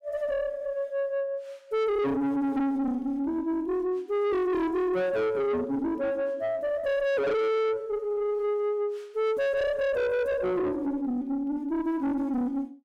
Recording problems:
distorted audio; soft clipping, signal-to-distortion ratio 6 dB

